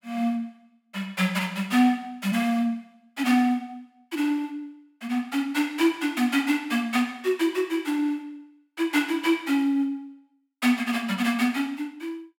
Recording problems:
none

